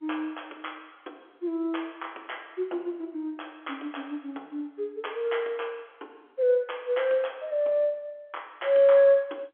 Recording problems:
telephone audio; 260 Hz to 3.4 kHz, G.711

